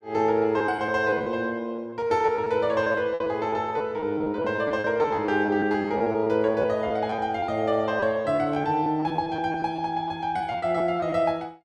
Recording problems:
lost packets; 13% of the sound replaced, filled with repeated pitch periods

